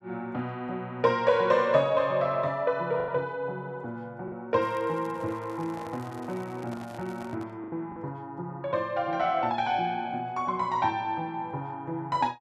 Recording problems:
packet loss; 1.9% of the sound replaced, filled with the last packet
crackling; from 4.5 to 7.5 s; loose cable, SNR 28 dB
handling noise; from 5 to 7.5 s; peak -10 dB vs average level

